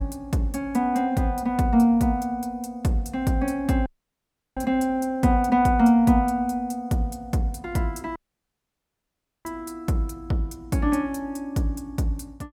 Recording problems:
dropout; at 4 s for 0.5 s and at 8 s for 1.5 s

